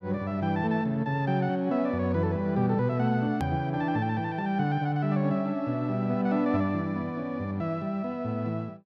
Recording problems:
hard cut with a click; at 3.5 s

